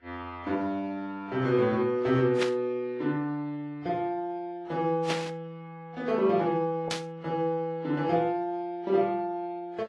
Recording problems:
lossy codec; AAC, then Vorbis, log-spectral distance 2 dB
static burst; at 2.5 s, at 5 s and at 7 s; peak +2 dB vs average level

